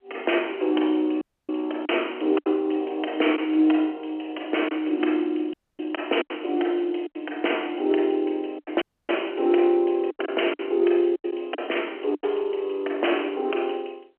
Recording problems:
phone line; 260 Hz to 3.2 kHz, G.711
lost packets; 6% of the sound replaced, filled with silence
dropout; at 1 s, at 5.5 s and at 9 s

